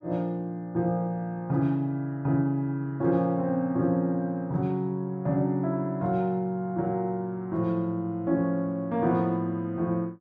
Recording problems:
none

